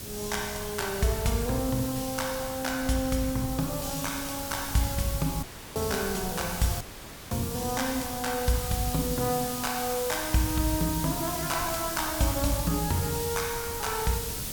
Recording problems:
background hiss; slope +1 dB per octave, SNR 5 dB
wind noise; below 220 Hz, SNR 14 dB
audio cutting out; at 5.5 s and at 7 s for 0.5 s

